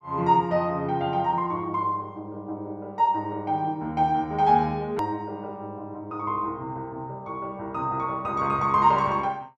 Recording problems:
edit click; at 5 s

